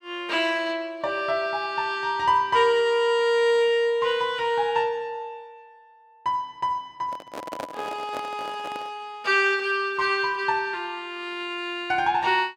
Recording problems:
handling noise; from 7 to 9 s; peak -5 dB vs average level

